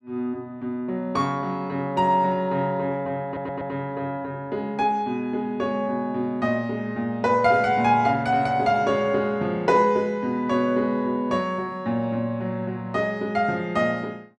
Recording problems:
stutter; at 3 s

